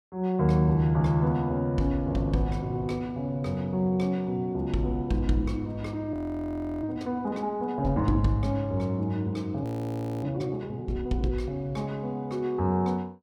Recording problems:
frozen audio; at 6 s for 0.5 s and at 9.5 s for 0.5 s

